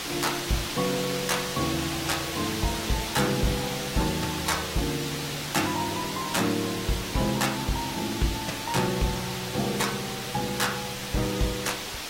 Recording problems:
lossy compression; AAC, log-spectral distance 8 dB, nothing above 16.5 kHz
distortion; hard clipping, signal-to-distortion ratio 12 dB
hiss; slope -1 dB per octave, SNR 2 dB

